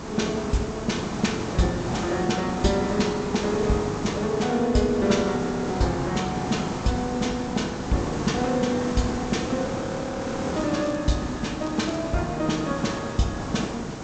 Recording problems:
low-pass filter; nothing above 8 kHz
electrical hum; 60 Hz, harmonics up to 480 Hz, SNR 23 dB
hiss; SNR 5 dB
frozen audio; at 5.5 s and at 9.5 s for 1 s
crackle; at 11 s and at 12 s; loose cable, SNR 23 dB

